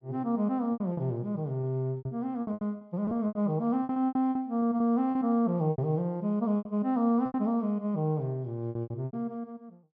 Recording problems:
packet loss; 14% of the sound replaced, filled with repeated pitch periods

